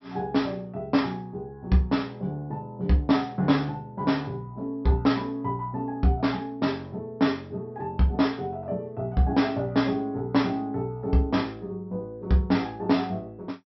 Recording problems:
treble missing; nothing above 5.7 kHz

